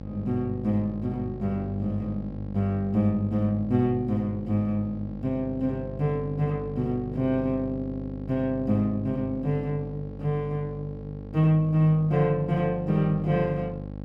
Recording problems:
electrical hum; 50 Hz, harmonics up to 850 Hz, SNR 11 dB

